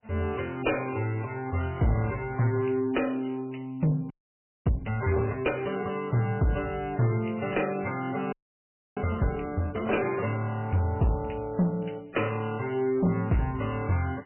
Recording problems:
codec artefacts; MP3, log-spectral distance 4 dB, nothing above 2.7 kHz
distortion; hard clipping, uneven, signal-to-distortion ratio 11 dB
frozen audio; at 4 s for 0.5 s and at 8.5 s for 0.5 s

